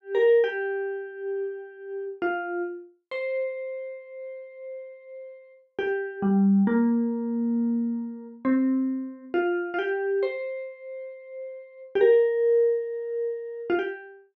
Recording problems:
none

